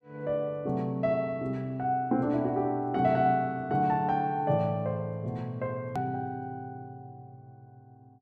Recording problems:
edit click; at 6 s

